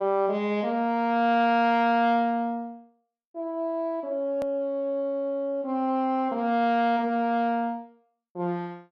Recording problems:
edit click; at 4.5 s

